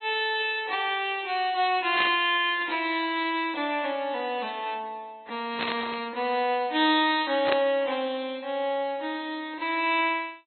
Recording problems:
treble cut off; nothing above 3.5 kHz
codec artefacts; AAC, log-spectral distance 2 dB
static burst; at 2 s, at 5.5 s and at 7.5 s; peak +2 dB vs average level

